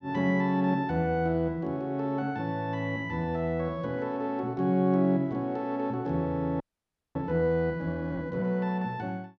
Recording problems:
frozen audio; at 6.5 s for 0.5 s

